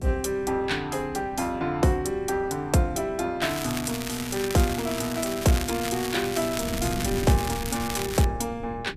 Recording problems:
hum; 60 Hz, harmonics up to 420 Hz, SNR 23 dB
wind noise; below 220 Hz, SNR 13 dB
crackling; from 3.5 to 8.5 s; loose cable, SNR 7 dB

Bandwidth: 14.5 kHz